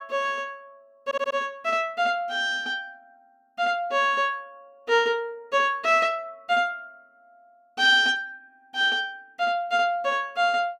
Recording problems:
stutter; at 1 s

